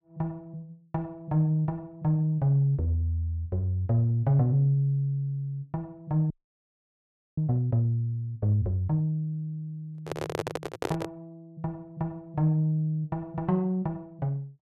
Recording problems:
audio freezing; at 6.5 s for 1 s
microphone handling noise; from 10 to 11 s; peak +2 dB vs average level

